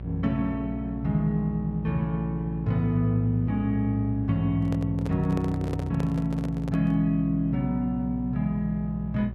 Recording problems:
hum; 60 Hz, harmonics up to 600 Hz, SNR 10 dB
handling noise; from 4.5 to 7 s; peak -5 dB vs average level

